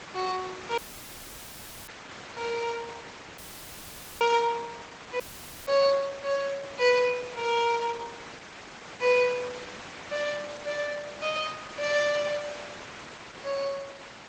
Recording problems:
codec artefacts; G.722, then Opus, log-spectral distance 11 dB
hiss; SNR 14 dB
dropout; at 1 s for 1 s, at 3.5 s for 1 s and at 5 s

